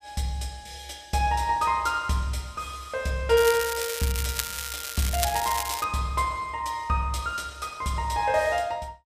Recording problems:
crackle; from 3.5 to 6 s; loose cable, SNR 4 dB

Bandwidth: 15 kHz